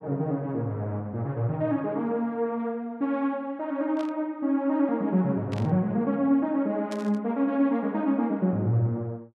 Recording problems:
burst of static; at 4 s, at 5.5 s and at 7 s; peak -11 dB vs average level

